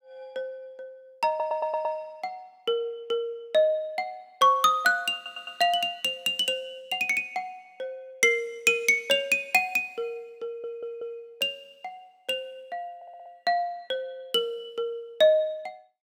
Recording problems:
stutter; 4 times, first at 1.5 s

